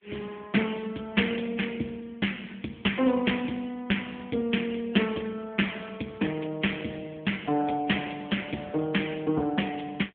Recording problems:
phone line; 150 Hz to 3.4 kHz, AMR-NB

